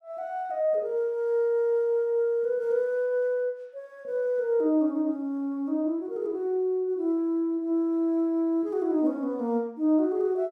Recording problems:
none

